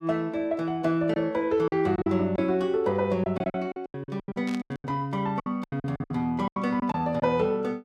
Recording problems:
packet loss; 14% of the sound replaced, filled with silence
burst of static; at 4.5 s; peak -9 dB vs average level

